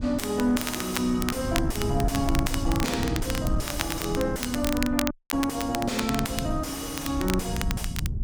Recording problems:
distorted audio; soft clipping, signal-to-distortion ratio 6 dB
low-frequency rumble; below 130 Hz, SNR 5 dB
crackling; vinyl, SNR 7 dB
dropout; at 5 s

